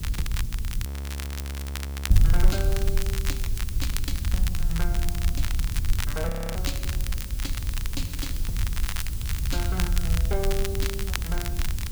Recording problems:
electrical hum; 60 Hz, harmonics up to 960 Hz, SNR 17 dB
hiss; slope +2 dB per octave, SNR 6 dB
wind on the microphone; below 70 Hz, SNR -7 dB
crackling; vinyl, SNR 1 dB
frozen audio; at 1 s for 1.5 s and at 6.5 s

